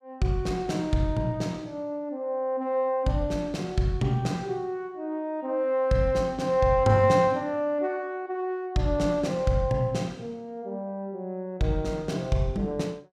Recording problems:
none

